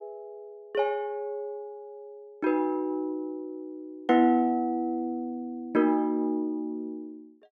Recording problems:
none

